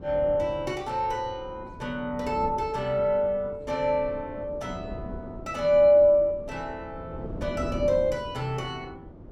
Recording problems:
wind noise; below 350 Hz, SNR 15 dB

